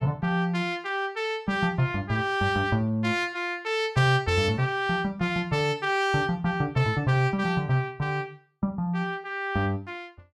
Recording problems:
none

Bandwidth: 14.5 kHz